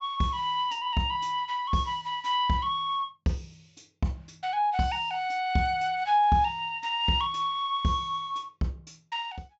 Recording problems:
treble cut off; nothing above 7.6 kHz

